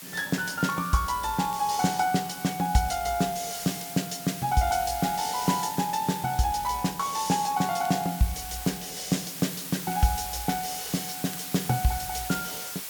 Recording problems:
background hiss; slope +1 dB per octave, SNR 9 dB
crackling; vinyl, SNR 26 dB

